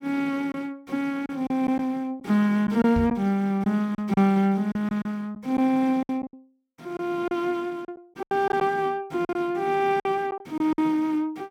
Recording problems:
lost packets; 8% of the sound replaced, filled with silence
microphone bump; at 3 s; peak 0 dB vs average level

